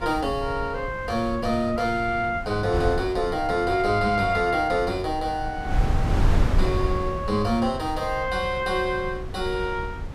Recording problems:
wind noise; below 120 Hz, SNR 6 dB

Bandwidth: 14 kHz